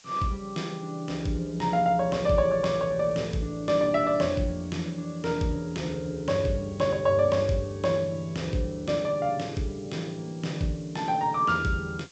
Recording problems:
treble missing; nothing above 8 kHz
background hiss; slope +2 dB per octave, SNR 25 dB

